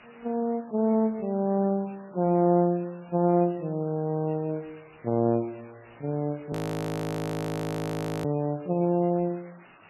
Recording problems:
lossy compression; MP3, then MP3, log-spectral distance 12 dB, nothing above 13.1 kHz
background hiss; SNR 25 dB
frozen audio; at 6.5 s for 1.5 s

